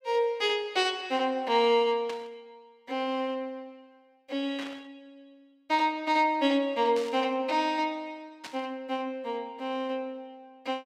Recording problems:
burst of static; 4 times, first at 2 s; peak -8 dB vs average level

